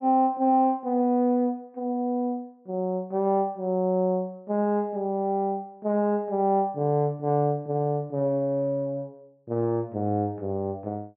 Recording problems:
treble cut off; nothing above 4 kHz

